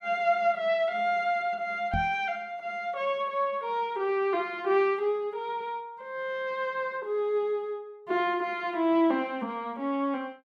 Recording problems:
microphone thump; at 2 s; peak 0 dB vs average level

